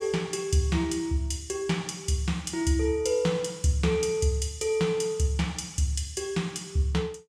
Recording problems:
none

